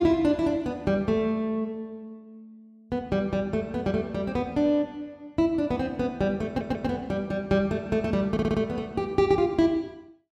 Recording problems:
stutter; at 6.5 s and at 8.5 s

